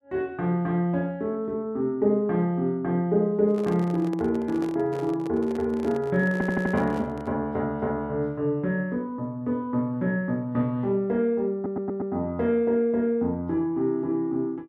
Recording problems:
handling noise; from 3.5 to 7.5 s; peak -5 dB vs average level
stutter; at 6.5 s and at 12 s

